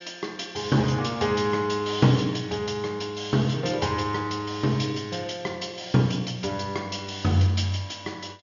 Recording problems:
treble missing; nothing above 6.9 kHz

